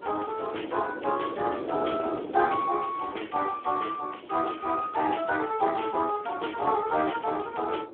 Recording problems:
phone line; 260 Hz to 3.4 kHz, Speex
wind on the microphone; below 540 Hz, SNR 11 dB

